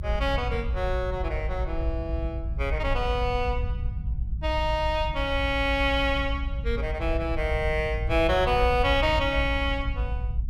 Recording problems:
low-frequency rumble; below 72 Hz, SNR 4 dB

